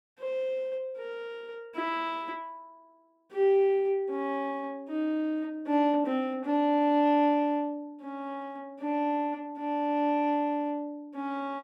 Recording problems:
none

